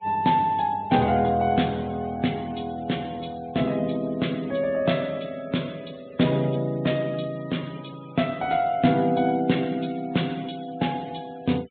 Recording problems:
treble cut off; nothing above 4 kHz
noise reduction artefacts; signal-to-artefact ratio 24 dB

